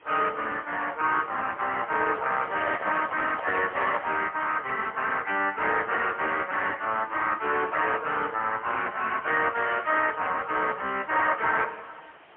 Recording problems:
phone line; 320 Hz to 3.1 kHz, AMR-NB, then MP3
hiss; SNR 27 dB
microphone handling noise; from 2 to 4 s; peak -3 dB vs average level

